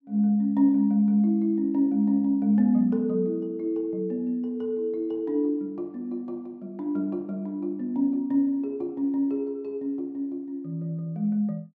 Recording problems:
none

